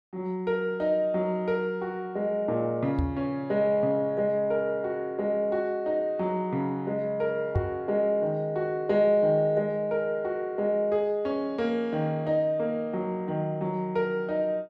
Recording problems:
microphone bump; at 3 s and at 7.5 s; peak +4 dB vs average level

